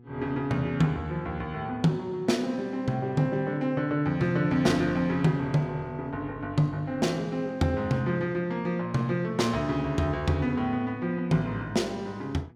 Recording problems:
electrical hum; 60 Hz, harmonics up to 840 Hz, SNR 25 dB

